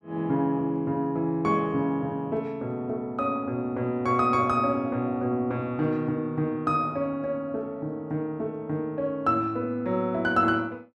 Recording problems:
none

